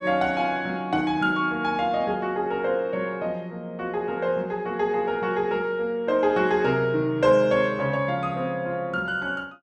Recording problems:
none

